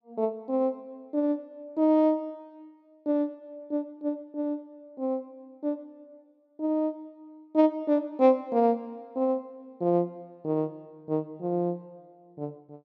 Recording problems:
none

